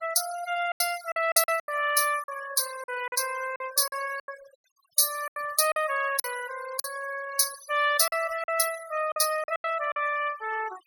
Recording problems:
denoising artefacts; signal-to-artefact ratio 14 dB
lost packets; 11% of the sound replaced, filled with silence

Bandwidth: 17.5 kHz